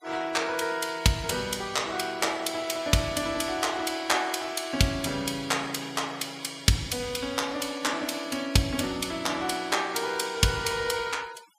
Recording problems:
denoising artefacts; signal-to-artefact ratio 20 dB

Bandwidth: 15.5 kHz